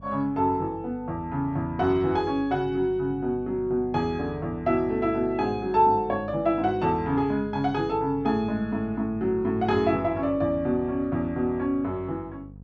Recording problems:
hum; 50 Hz, harmonics up to 500 Hz, SNR 18 dB

